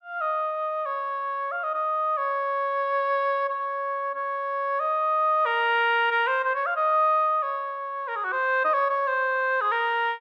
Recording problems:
none

